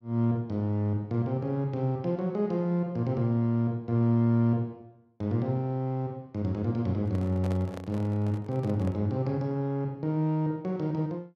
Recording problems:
microphone handling noise; from 7 to 9 s; peak -8 dB vs average level

